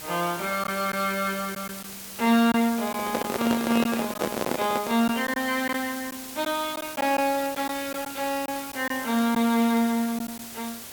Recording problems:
background hiss; slope -1 dB per octave, SNR 11 dB
crackle; vinyl, SNR 27 dB
lost packets; 4% of the sound replaced, filled with silence
handling noise; from 3 to 5 s; peak +2 dB vs average level

